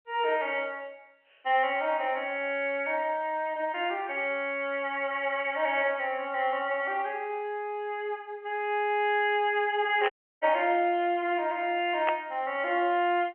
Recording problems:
phone line; 320 Hz to 3.3 kHz, G.711
static burst; at 10 s and at 12 s; peak +2 dB vs average level
dropout; at 10 s

